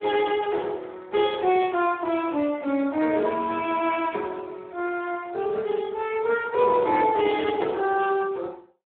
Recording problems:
phone line; 240 Hz to 2.9 kHz, Speex

